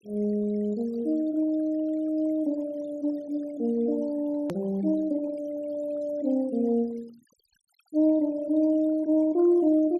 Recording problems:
noise reduction artefacts; signal-to-artefact ratio 27 dB
hard cut with a click; at 4.5 s

